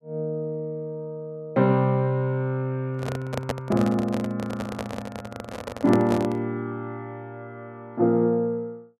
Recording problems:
microphone handling noise; from 3 to 6.5 s; peak +2 dB vs average level

